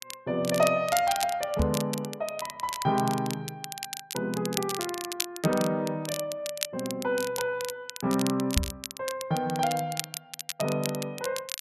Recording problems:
crackle; vinyl, SNR 7 dB
microphone bump; at 1.5 s and at 8.5 s; peak +7 dB vs average level

